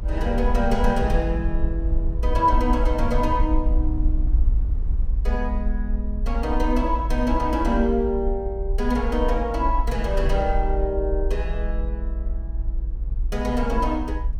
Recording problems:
rumble; below 54 Hz, strongest tone 32 Hz, SNR 1 dB

